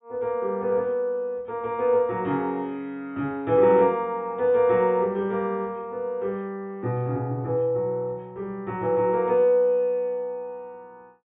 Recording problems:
treble missing; nothing above 4 kHz

